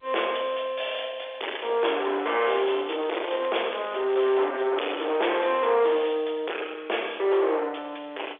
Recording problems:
telephone audio; 340 Hz to 3.5 kHz, G.711
distorted audio; soft clipping, signal-to-distortion ratio 6 dB
crackling; from 2 to 4.5 s; loose cable, SNR 19 dB

